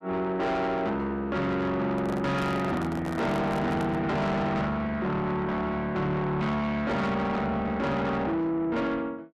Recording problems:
distortion; soft clipping, signal-to-distortion ratio 8 dB
microphone handling noise; from 2 to 4 s; peak -1 dB vs average level

